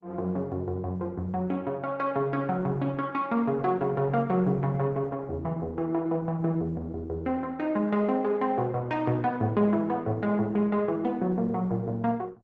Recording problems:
lossy compression; Opus, log-spectral distance 2 dB

